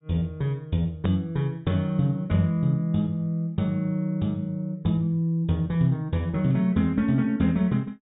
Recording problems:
treble missing; nothing above 4 kHz
click at an edit; at 1 s

